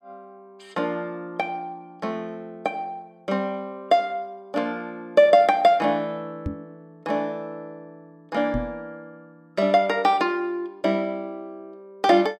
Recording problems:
microphone bump; at 6.5 s and at 8.5 s; peak -1 dB vs average level

